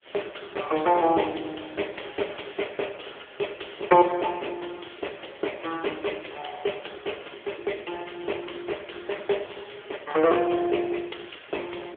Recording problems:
phone line; 300 Hz to 3.4 kHz, AMR-NB

